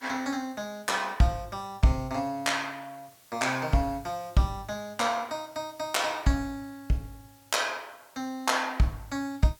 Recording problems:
hiss; slope 0 dB per octave, SNR 26 dB

